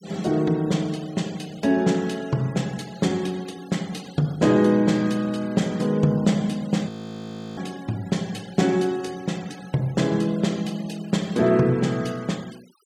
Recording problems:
noise reduction artefacts; signal-to-artefact ratio 23 dB
audio freezing; at 7 s for 0.5 s

